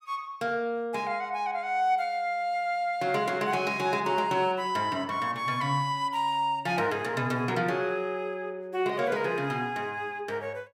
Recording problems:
none

